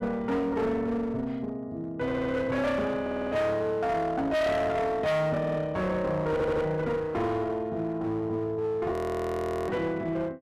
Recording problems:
distorted audio; hard clipping, uneven, signal-to-distortion ratio 7 dB
audio stuttering; 4 times, first at 2 s
audio freezing; at 9 s for 1 s

